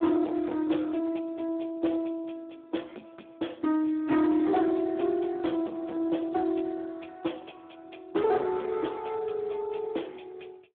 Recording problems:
telephone audio; 170 Hz to 3.5 kHz, Speex
distorted audio; soft clipping, signal-to-distortion ratio 10 dB

